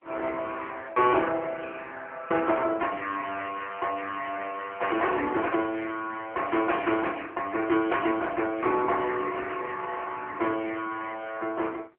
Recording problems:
telephone audio; 300 Hz to 3.3 kHz, AMR-NB

